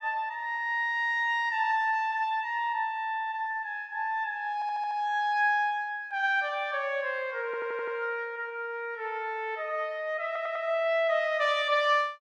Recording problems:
audio stuttering; at 4.5 s, at 7.5 s and at 10 s

